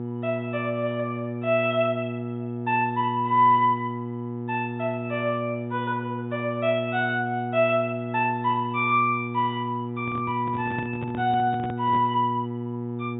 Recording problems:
low-pass filter; nothing above 4 kHz
hum; 60 Hz, harmonics up to 960 Hz, SNR 6 dB
handling noise; from 10 to 12 s; peak -6 dB vs average level

